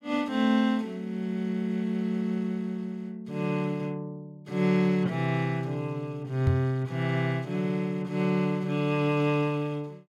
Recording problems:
microphone thump; at 6.5 s; peak +5 dB vs average level

